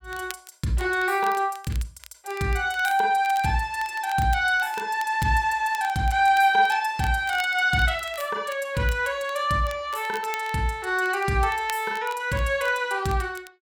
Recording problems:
crackle; vinyl, SNR 21 dB

